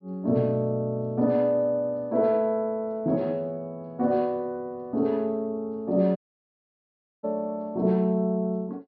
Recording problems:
treble missing; nothing above 5.6 kHz
audio cutting out; at 6 s for 1 s

